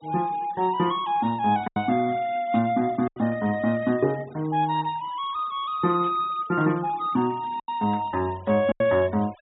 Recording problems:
low-pass filter; nothing above 4 kHz
denoising artefacts; signal-to-artefact ratio 24 dB
lost packets; 3% of the sound replaced, filled with silence
burst of static; at 2.5 s, at 6 s and at 8 s; peak -17 dB vs average level

